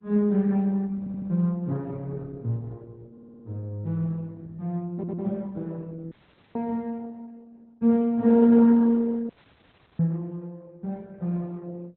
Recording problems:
lossy codec; Opus, log-spectral distance 3 dB
audio stuttering; at 1 s, at 3 s and at 5 s
dropout; at 6 s and at 9.5 s for 0.5 s

